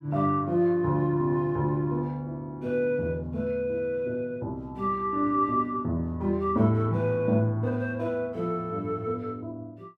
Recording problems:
none

